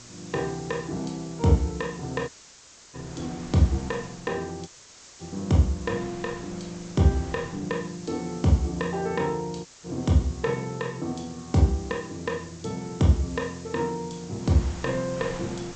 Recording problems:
treble missing; nothing above 8 kHz
electrical hum; 60 Hz, harmonics up to 720 Hz, SNR 26 dB
background hiss; SNR 19 dB
wind noise; below 1.7 kHz, SNR 19 dB
dropout; at 2.5 s for 0.5 s, at 4.5 s for 0.5 s and at 9.5 s

